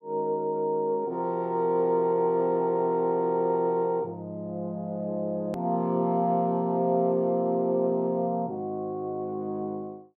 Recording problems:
click at an edit; at 5.5 s

